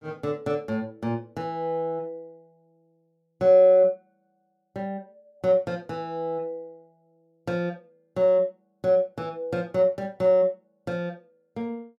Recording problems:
none

